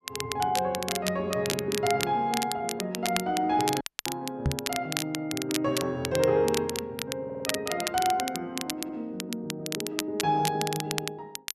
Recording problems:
crackling; vinyl, SNR 5 dB
audio cutting out; at 4 s
microphone bump; at 4.5 s; peak +6 dB vs average level
audio stuttering; at 7.5 s and at 8.5 s

